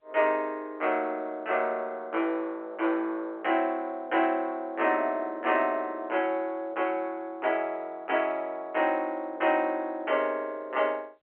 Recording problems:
phone line; 260 Hz to 3.1 kHz, G.711

